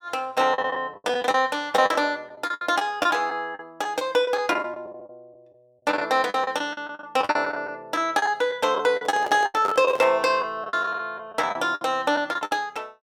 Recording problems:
packet loss; 15% of the sound replaced, filled with the last packet
microphone handling noise; from 9 to 10 s; peak -6 dB vs average level

